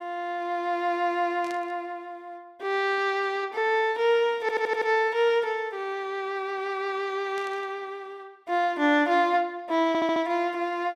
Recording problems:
static burst; at 1.5 s and at 7.5 s; peak -13 dB vs average level
audio stuttering; at 4.5 s and at 10 s

